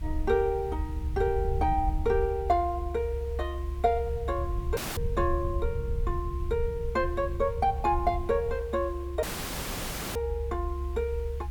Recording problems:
hiss; SNR 26 dB
low-frequency rumble; below 72 Hz, SNR 4 dB
audio cutting out; at 5 s and at 9 s for 1 s

